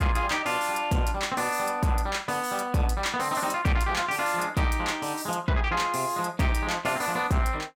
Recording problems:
distortion; soft clipping, signal-to-distortion ratio 11 dB

